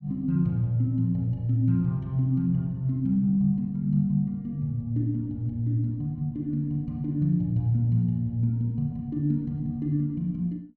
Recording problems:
none

